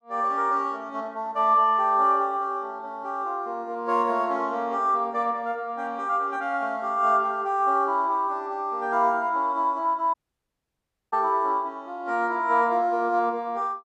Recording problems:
dropout; at 10 s for 1 s

